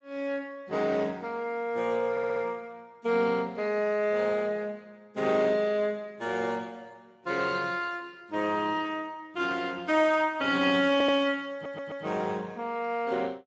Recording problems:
lossy codec; Speex, log-spectral distance 3 dB, nothing above 7.6 kHz
stutter; at 2 s, at 11 s and at 12 s

